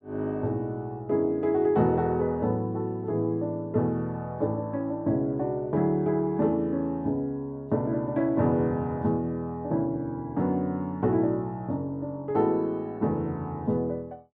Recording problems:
none

